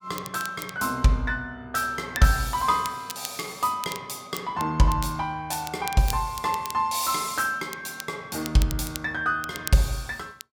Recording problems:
crackling; vinyl, SNR 13 dB

